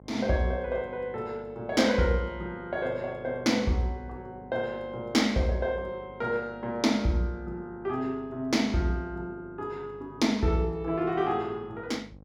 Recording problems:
electrical hum; 50 Hz, harmonics up to 1.1 kHz, SNR 22 dB

